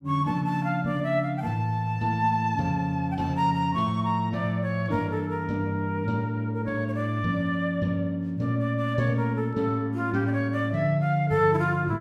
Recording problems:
none

